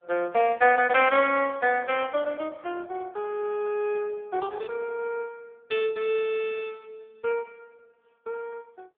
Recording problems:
phone line; 280 Hz to 3.4 kHz, AMR-NB

